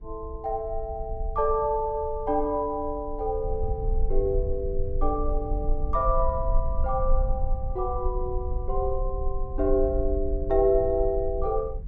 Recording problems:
low-frequency rumble; below 50 Hz, strongest tone 24 Hz, SNR 5 dB

